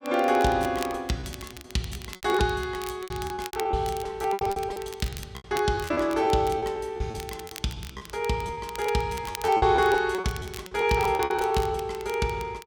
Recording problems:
crackle; vinyl, SNR 16 dB
packet loss; 15% of the sound replaced, filled with repeated pitch periods

